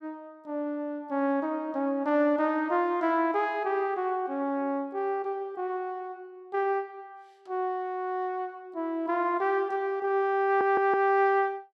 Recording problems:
stutter; at 10 s

